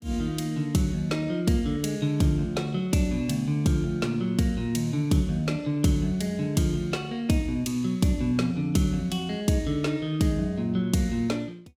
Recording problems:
none

